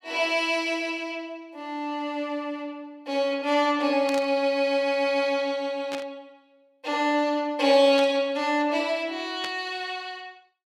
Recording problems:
static burst; 4 times, first at 4 s; peak -6 dB vs average level

